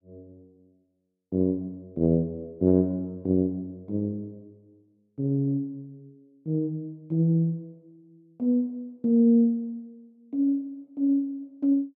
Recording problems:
none

